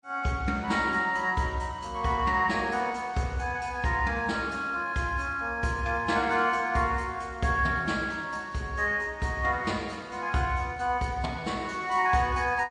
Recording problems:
lossy codec; MP3, log-spectral distance 2 dB, nothing above 8.2 kHz

